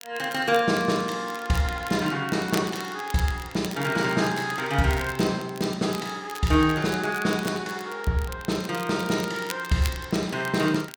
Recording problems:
crackle; vinyl, SNR 16 dB

